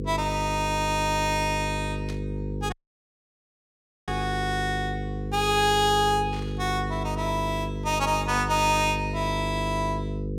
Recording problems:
hum; 50 Hz, harmonics up to 500 Hz, SNR 6 dB
static burst; at 2 s, at 6.5 s and at 8.5 s; peak -11 dB vs average level
dropout; at 2.5 s for 1.5 s

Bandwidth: 16.5 kHz